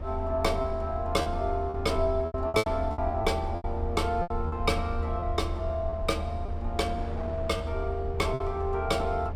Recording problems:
low-frequency rumble; below 80 Hz, SNR 5 dB
wind noise; below 770 Hz, SNR 14 dB
packet loss; 8% of the sound replaced, filled with repeated pitch periods

